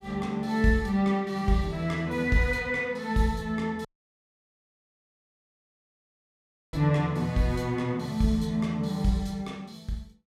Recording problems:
dropout; at 4 s for 3 s

